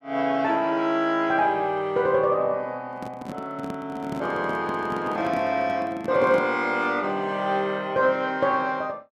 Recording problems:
microphone handling noise; from 3 to 6.5 s; peak -5 dB vs average level

